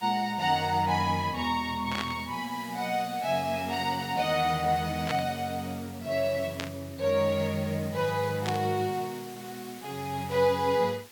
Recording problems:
hiss; slope 0 dB per octave, SNR 18 dB
burst of static; 4 times, first at 2 s; peak +1 dB vs average level

